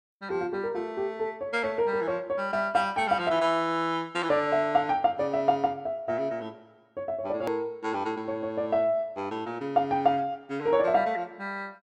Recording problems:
hard cut with a click; at 7.5 s

